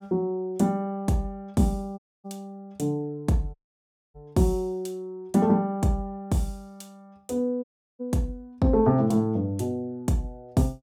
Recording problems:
dropout; at 2 s, at 3.5 s for 0.5 s and at 7.5 s

